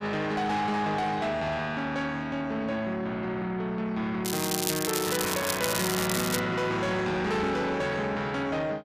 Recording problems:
distortion; soft clipping, signal-to-distortion ratio 11 dB
crackling; from 4.5 to 6.5 s; loose cable, SNR 2 dB

